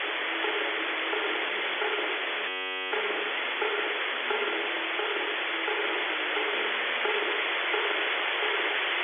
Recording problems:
telephone audio; 300 Hz to 3.8 kHz, G.711
hiss; SNR -8 dB
audio freezing; at 2.5 s

